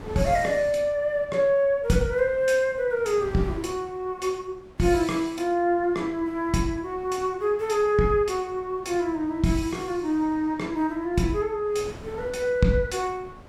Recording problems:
wind on the microphone; below 630 Hz, SNR 20 dB

